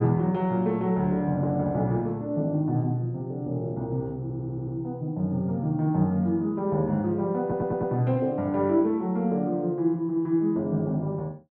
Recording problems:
audio stuttering; at 4 s and at 7.5 s

